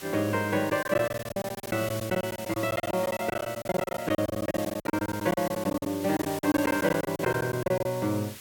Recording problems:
background hiss; slope +1 dB per octave, SNR 13 dB
lost packets; 19% of the sound replaced, filled with silence

